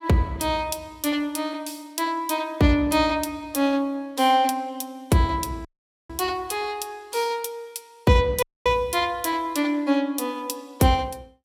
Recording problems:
dropout; at 5.5 s and at 8.5 s

